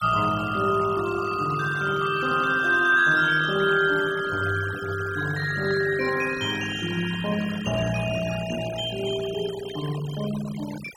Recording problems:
noise reduction artefacts; signal-to-artefact ratio 15 dB

